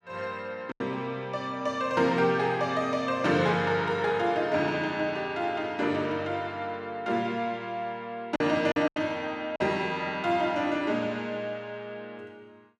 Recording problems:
packet loss; 2% of the sound replaced, filled with silence

